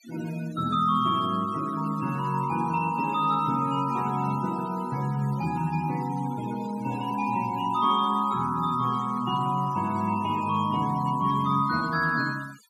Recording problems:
noise reduction artefacts; signal-to-artefact ratio 19 dB

